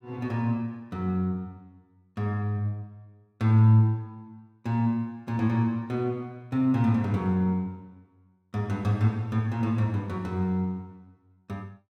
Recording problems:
none

